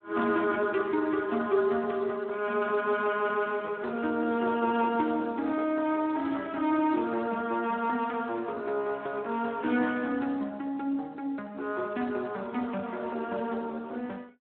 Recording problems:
phone line; 220 Hz to 3.7 kHz, Speex

